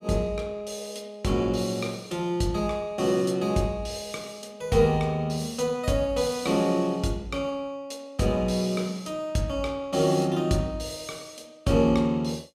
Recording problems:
none

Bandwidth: 15 kHz